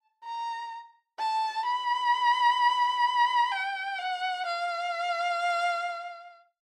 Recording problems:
none

